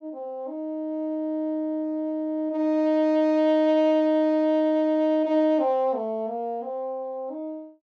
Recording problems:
none

